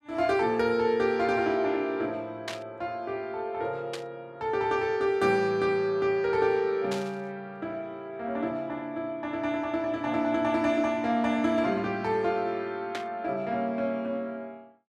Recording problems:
static burst; 4 times, first at 2.5 s; peak -2 dB vs average level

